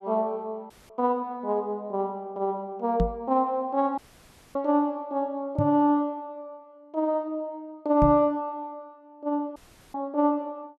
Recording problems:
dropout; at 0.5 s, at 4 s for 0.5 s and at 9.5 s
knock on the microphone; at 3 s, at 5.5 s and at 8 s; peak +4 dB vs average level

